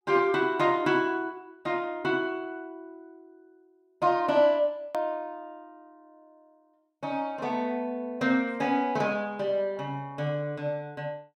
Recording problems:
hard cut with a click; at 5 s

